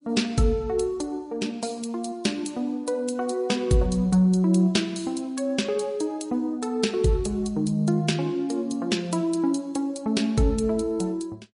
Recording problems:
lossy codec; MP3, log-spectral distance 2 dB, nothing above 10.4 kHz

